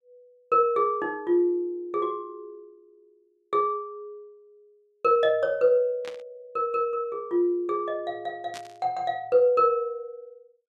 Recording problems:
static burst; at 6 s and at 8.5 s; peak -10 dB vs average level

